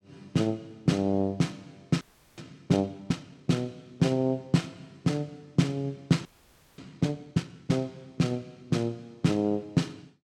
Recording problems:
frozen audio; at 2 s and at 6.5 s for 0.5 s

